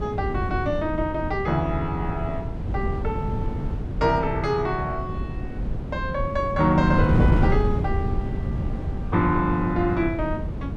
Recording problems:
wind noise; below 180 Hz, SNR 3 dB

